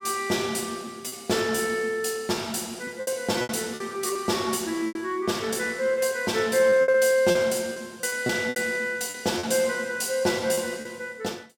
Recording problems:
lost packets; 8% of the sound replaced, filled with repeated pitch periods

